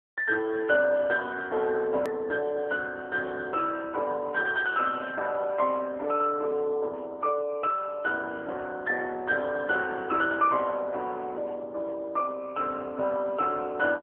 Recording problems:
phone line; 320 Hz to 3 kHz, AMR-NB
click at an edit; at 2 s

